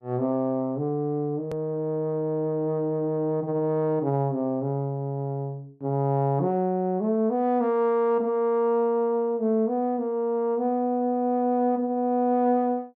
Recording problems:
edit click; at 1.5 s

